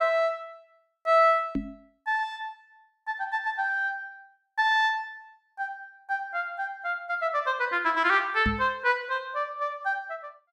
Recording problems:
microphone bump; at 1.5 s and at 8.5 s; peak +2 dB vs average level

